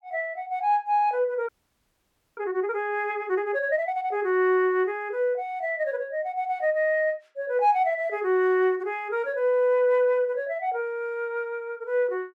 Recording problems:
audio freezing; at 1.5 s for 1 s

